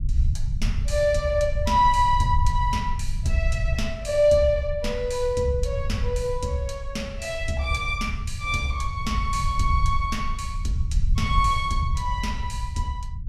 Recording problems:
rumble; below 82 Hz, SNR 4 dB

